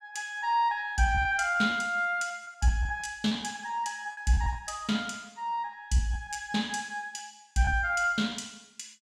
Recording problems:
lost packets; 8% of the sound replaced, filled with repeated pitch periods

